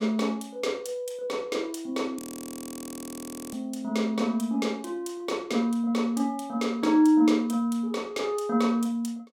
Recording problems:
frozen audio; at 2 s for 1.5 s

